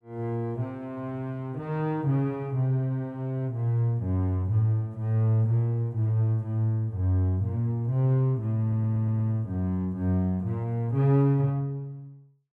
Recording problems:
stutter; at 8.5 s

